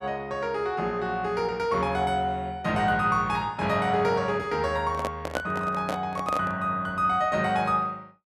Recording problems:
handling noise; from 5 to 6.5 s; peak +2 dB vs average level

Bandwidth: 13.5 kHz